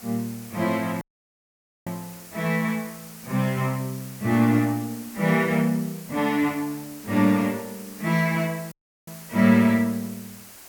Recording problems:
background hiss; slope -1 dB per octave, SNR 18 dB
dropout; at 1 s for 1 s and at 8.5 s

